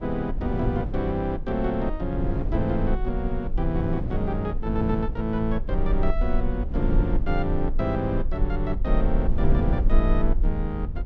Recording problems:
low-frequency rumble; below 42 Hz, strongest tone 20 Hz, SNR 3 dB
wind on the microphone; below 200 Hz, SNR 5 dB

